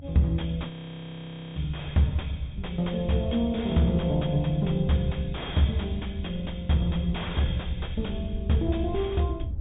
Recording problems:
low-pass filter; nothing above 4 kHz
distorted audio; soft clipping, signal-to-distortion ratio 9 dB
low-frequency rumble; below 82 Hz, SNR 10 dB
frozen audio; at 0.5 s for 1 s

